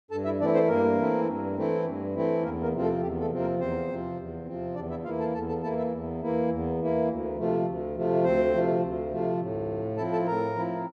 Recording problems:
audio stuttering; at 9.5 s

